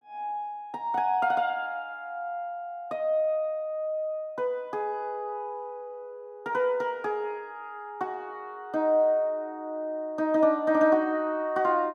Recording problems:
none

